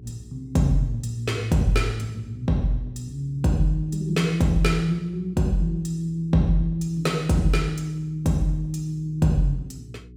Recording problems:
hum; 60 Hz, harmonics up to 420 Hz, SNR 21 dB

